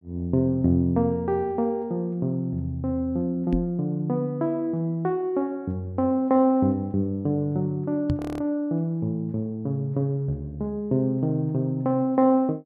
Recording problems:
microphone bump; at 3.5 s and at 8 s; peak +3 dB vs average level
frozen audio; at 8 s

